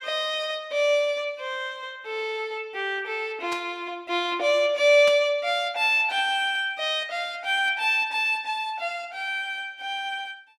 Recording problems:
static burst; at 3.5 s and at 5 s; peak -6 dB vs average level

